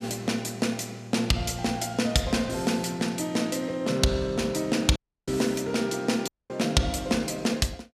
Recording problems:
audio cutting out; at 5 s and at 6.5 s

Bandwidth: 14.5 kHz